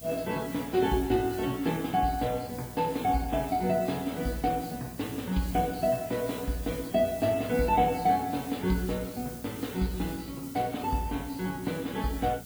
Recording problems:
lossy codec; MP3, log-spectral distance 4 dB
hum; 60 Hz, harmonics up to 780 Hz, SNR 19 dB
background hiss; slope +2 dB per octave, SNR 16 dB

